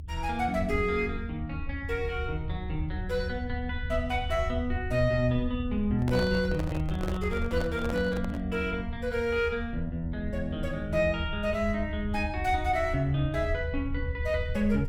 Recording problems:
rumble; below 80 Hz, SNR 6 dB
microphone handling noise; from 6 to 8.5 s; peak -2 dB vs average level

